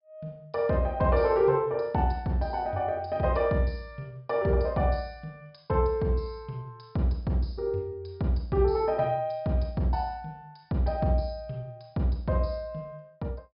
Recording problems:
low-pass filter; nothing above 5.5 kHz

